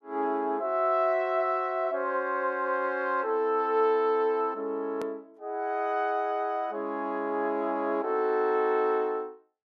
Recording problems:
hard cut with a click; at 5 s

